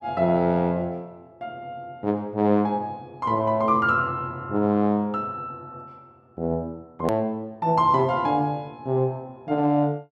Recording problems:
click at an edit; at 7 s

